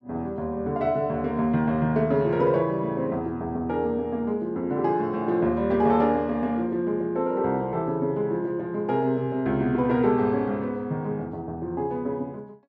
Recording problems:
none

